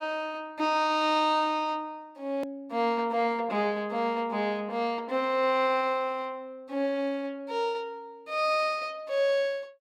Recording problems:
edit click; at 2.5 s

